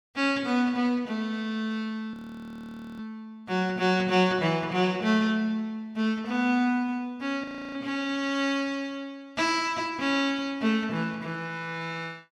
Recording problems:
frozen audio; at 2 s for 1 s and at 7.5 s

